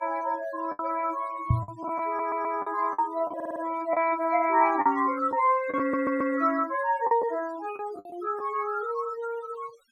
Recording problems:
noise reduction artefacts; signal-to-artefact ratio 19 dB
packet loss; 7% of the sound replaced, filled with the last packet
microphone bump; at 1.5 s; peak +7 dB vs average level
audio stuttering; at 2 s, at 3.5 s and at 6 s

